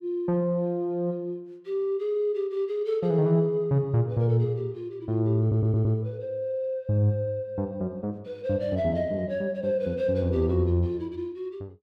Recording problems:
audio stuttering; at 5.5 s

